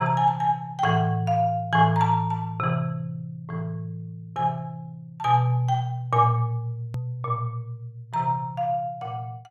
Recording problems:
edit click; at 7 s

